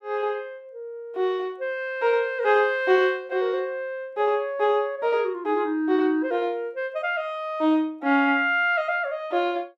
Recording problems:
none

